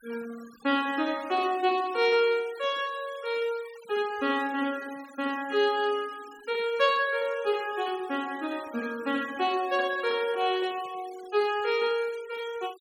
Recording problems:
noise reduction artefacts; signal-to-artefact ratio 20 dB

